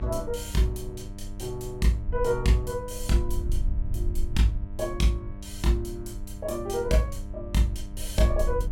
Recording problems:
electrical hum; 50 Hz, harmonics up to 1.6 kHz, SNR 16 dB
wind on the microphone; below 58 Hz, SNR 9 dB

